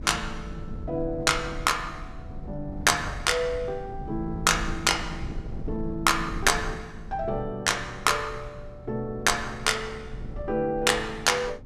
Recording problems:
wind noise; below 130 Hz, SNR 13 dB

